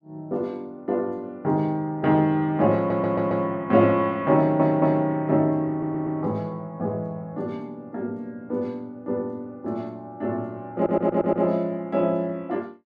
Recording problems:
stutter; 4 times, first at 3 s

